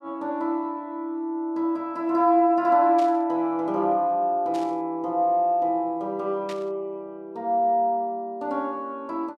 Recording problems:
static burst; at 3 s, at 4.5 s and at 6.5 s; peak -11 dB vs average level

